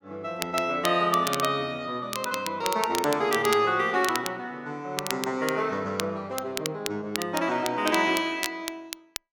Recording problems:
crackling; vinyl, SNR 8 dB

